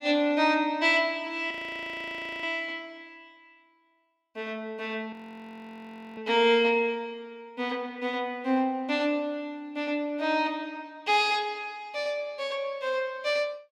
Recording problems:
frozen audio; at 1.5 s for 1 s and at 5 s for 1 s

